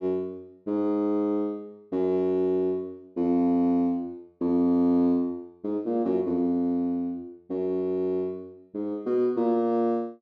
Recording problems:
none

